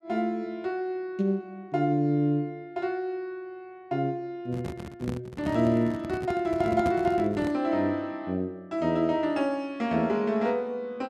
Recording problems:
handling noise; from 4.5 to 7.5 s; peak 0 dB vs average level

